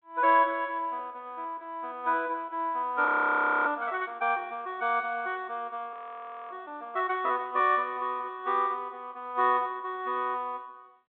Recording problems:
phone line; 260 Hz to 3.7 kHz, G.726
audio freezing; at 3 s for 0.5 s and at 6 s for 0.5 s

